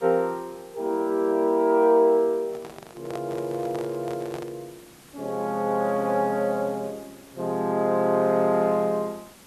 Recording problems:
background hiss; slope -3 dB per octave, SNR 25 dB
handling noise; from 2.5 to 4.5 s; peak -9 dB vs average level

